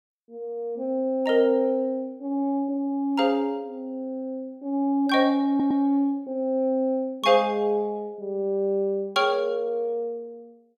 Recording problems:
audio stuttering; at 5.5 s

